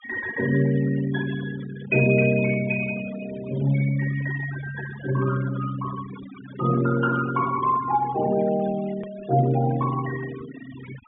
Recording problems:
treble missing; nothing above 3.6 kHz
denoising artefacts; signal-to-artefact ratio 16 dB
click at an edit; at 9 s

